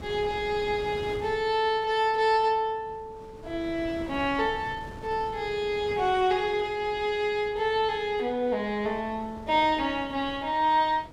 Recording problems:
wind noise; below 470 Hz, SNR 18 dB

